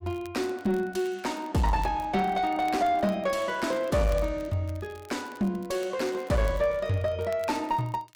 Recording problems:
distortion; soft clipping, signal-to-distortion ratio 10 dB
crackle; vinyl, SNR 25 dB

